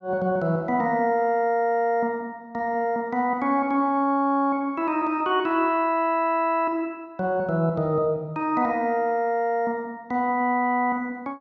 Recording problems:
none

